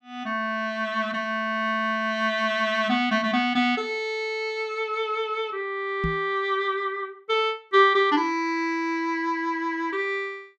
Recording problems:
microphone bump; at 6 s; peak 0 dB vs average level

